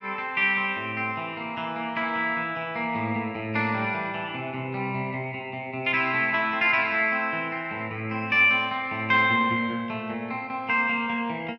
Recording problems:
none

